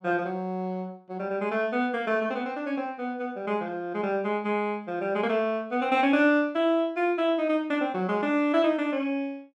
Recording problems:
none

